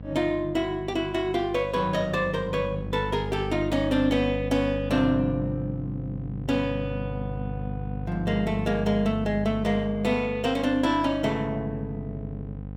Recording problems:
electrical hum; 50 Hz, harmonics up to 800 Hz, SNR 8 dB

